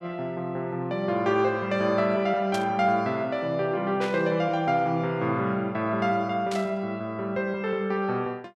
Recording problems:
static burst; at 2.5 s, at 4 s and at 6.5 s; peak -5 dB vs average level

